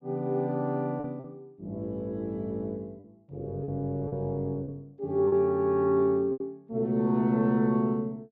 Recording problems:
lost packets; 4% of the sound replaced, filled with repeated pitch periods

